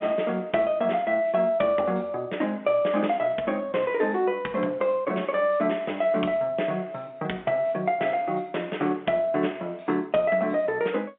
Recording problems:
telephone audio; 300 Hz to 3.5 kHz, G.711

